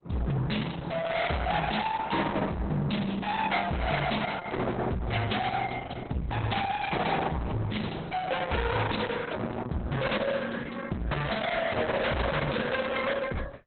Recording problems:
codec artefacts; Opus, log-spectral distance 6 dB, nothing above 4 kHz
distorted audio; hard clipping, uneven, signal-to-distortion ratio 5 dB

